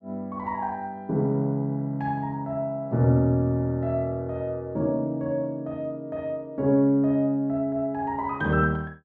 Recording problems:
none

